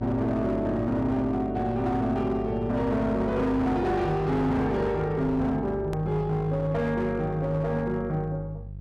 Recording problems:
distorted audio; hard clipping, signal-to-distortion ratio 11 dB
hum; 50 Hz, harmonics up to 350 Hz, SNR 12 dB
edit click; at 6 s

